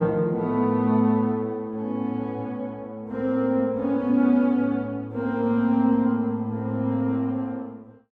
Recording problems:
none

